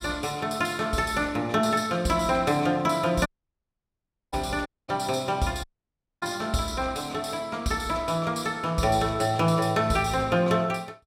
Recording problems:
audio cutting out; at 3.5 s for 1 s, at 4.5 s and at 5.5 s for 0.5 s

